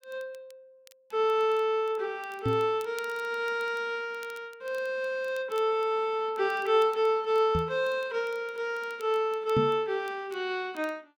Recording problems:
crackle; vinyl, SNR 27 dB
knock on the microphone; at 2.5 s, at 7.5 s and at 9.5 s; peak +3 dB vs average level

